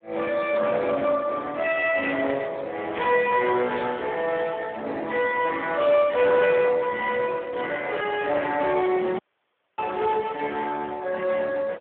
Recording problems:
phone line; 320 Hz to 3.5 kHz, Speex
distortion; soft clipping, signal-to-distortion ratio 14 dB
audio cutting out; at 9 s for 0.5 s

